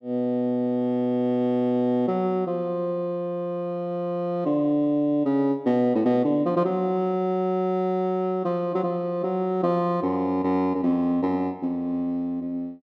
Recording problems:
none

